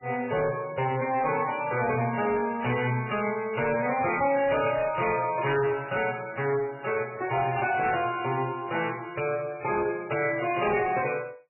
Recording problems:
codec artefacts; MP3, log-spectral distance 6 dB, nothing above 2.4 kHz
distortion; hard clipping, uneven, signal-to-distortion ratio 11 dB

